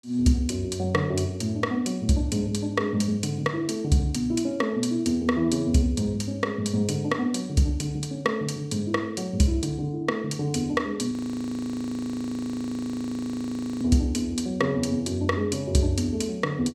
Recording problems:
frozen audio; at 11 s for 2.5 s

